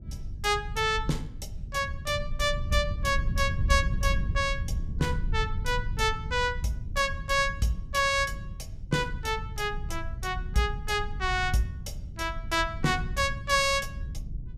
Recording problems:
low-frequency rumble; below 94 Hz, SNR 7 dB

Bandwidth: 14.5 kHz